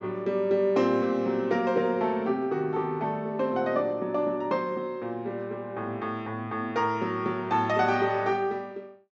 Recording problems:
treble cut off; nothing above 8 kHz

